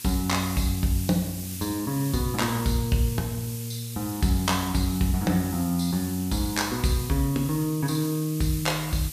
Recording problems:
hum; 60 Hz, harmonics up to 840 Hz, SNR 27 dB
hiss; slope +5 dB per octave, SNR 11 dB

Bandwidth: 14.5 kHz